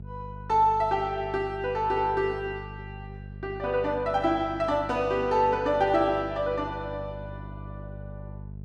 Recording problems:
hum; 50 Hz, harmonics up to 450 Hz, SNR 15 dB

